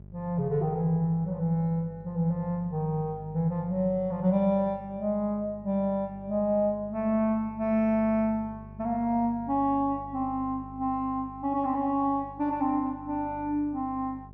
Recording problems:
electrical hum; 50 Hz, harmonics up to 600 Hz, SNR 19 dB

